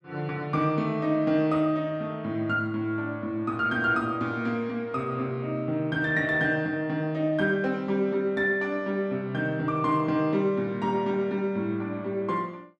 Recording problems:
none

